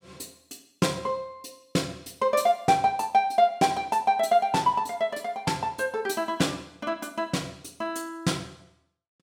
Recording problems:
none

